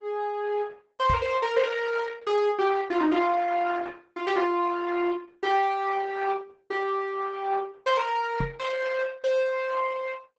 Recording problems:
lossy codec; Opus, log-spectral distance 4 dB, nothing above 8 kHz
microphone thump; at 1 s and at 8.5 s; peak -1 dB vs average level

